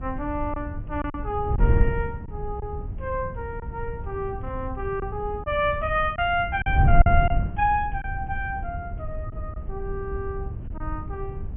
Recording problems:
treble cut off; nothing above 3.2 kHz
wind on the microphone; below 94 Hz, SNR 2 dB
packet loss; 4% of the sound replaced, filled with silence

